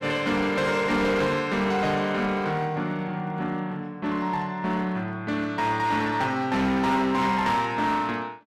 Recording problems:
distortion; hard clipping, uneven, signal-to-distortion ratio 10 dB

